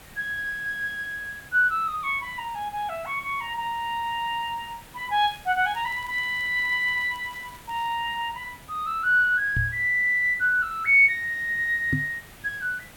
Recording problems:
hiss; SNR 22 dB
crackle; from 5.5 to 8 s; loose cable, SNR 28 dB
microphone thump; at 9.5 s and at 12 s; peak +2 dB vs average level

